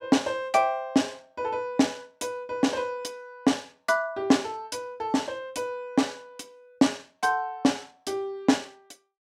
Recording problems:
none

